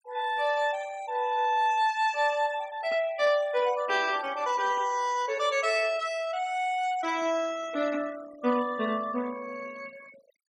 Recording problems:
noise reduction artefacts; signal-to-artefact ratio 20 dB

